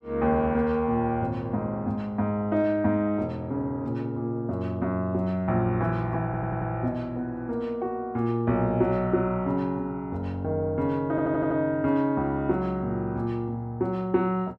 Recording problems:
stutter; at 6.5 s and at 11 s

